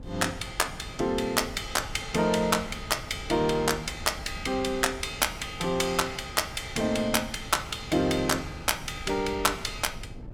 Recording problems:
wind on the microphone; below 190 Hz, SNR 15 dB

